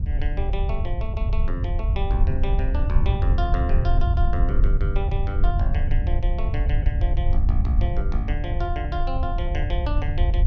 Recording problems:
low-frequency rumble; below 70 Hz, SNR -8 dB

